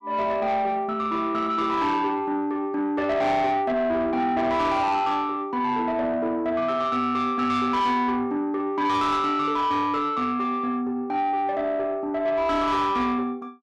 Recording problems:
distorted audio; soft clipping, signal-to-distortion ratio 11 dB

